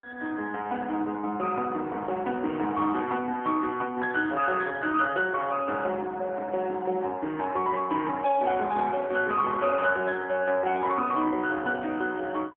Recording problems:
telephone audio; 220 Hz to 3.3 kHz, AMR-NB

